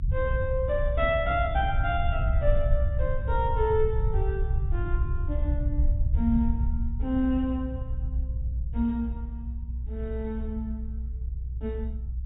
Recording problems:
treble cut off; nothing above 4 kHz
low-frequency rumble; below 76 Hz, SNR 0 dB

